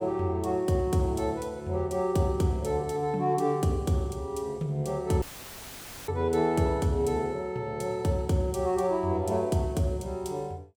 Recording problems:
audio cutting out; at 5 s for 1 s; filled with static

